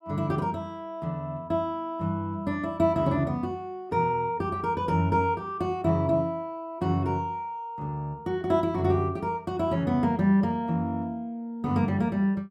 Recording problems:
none

